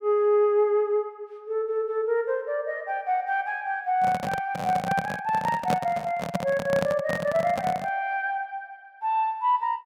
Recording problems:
handling noise; from 4 to 8 s; peak +3 dB vs average level

